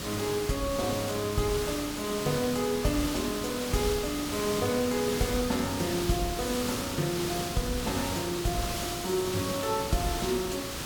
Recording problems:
hiss; slope -2 dB per octave, SNR 4 dB

